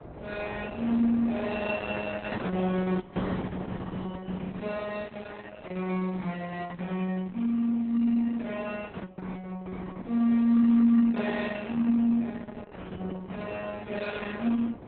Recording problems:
codec artefacts; Opus, then AAC, log-spectral distance 3 dB, nothing above 4 kHz
wind on the microphone; below 640 Hz, SNR 17 dB

